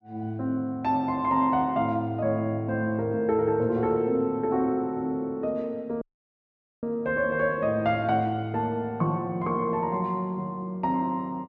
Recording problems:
audio cutting out; at 6 s for 1 s

